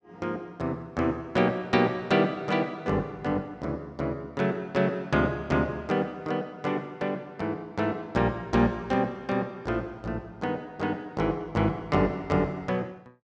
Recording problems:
none

